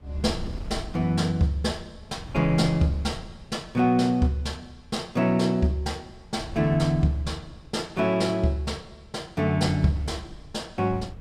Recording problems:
wind noise; below 130 Hz, SNR 16 dB

